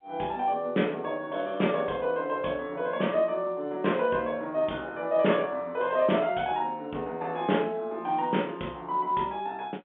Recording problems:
phone line; 220 Hz to 3.6 kHz, G.711

